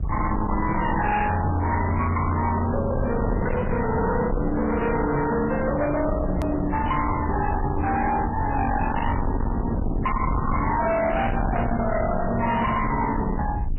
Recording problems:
codec artefacts; MP3, log-spectral distance 4 dB, nothing above 2.9 kHz
distorted audio; hard clipping, uneven, signal-to-distortion ratio 6 dB
rumble; below 250 Hz, SNR 5 dB
click at an edit; at 6.5 s

